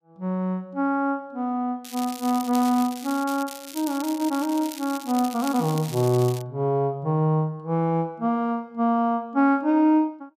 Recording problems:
crackle; from 2 to 6.5 s; loose cable, SNR 14 dB

